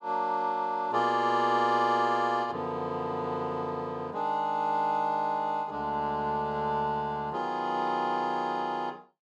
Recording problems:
none

